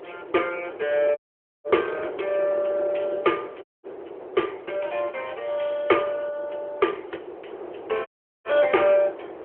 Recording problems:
phone line; 300 Hz to 3.3 kHz, AMR-NB
wind on the microphone; below 630 Hz, SNR 12 dB
audio cutting out; at 1 s, at 3.5 s and at 8 s

